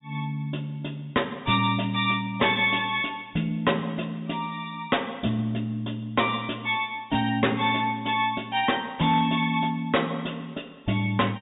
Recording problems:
treble cut off; nothing above 4 kHz
distortion; hard clipping, signal-to-distortion ratio 12 dB

